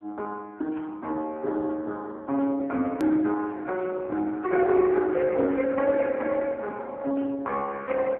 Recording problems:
phone line; 240 Hz to 2.6 kHz, AMR-NB
hard cut with a click; at 3 s

